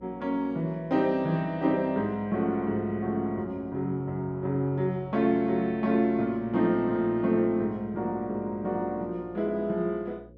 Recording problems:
mains hum; 60 Hz, harmonics up to 540 Hz, SNR 25 dB

